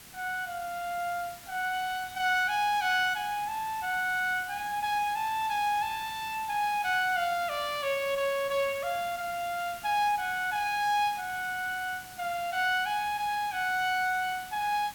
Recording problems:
hiss; slope 0 dB per octave, SNR 16 dB

